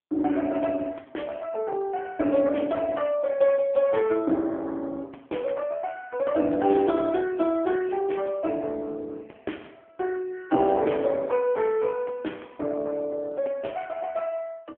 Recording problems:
telephone audio; 240 Hz to 3.4 kHz, AMR-NB

